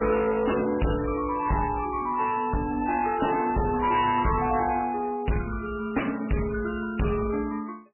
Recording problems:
lossy codec; MP3, log-spectral distance 5 dB, nothing above 2.8 kHz
distorted audio; hard clipping, uneven, signal-to-distortion ratio 6 dB

